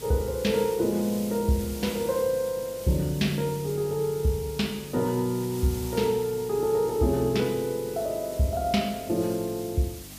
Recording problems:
hum; 50 Hz, harmonics up to 300 Hz, SNR 22 dB
hiss; slope +1 dB per octave, SNR 15 dB

